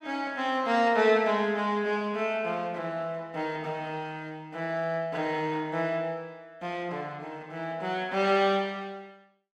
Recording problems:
none

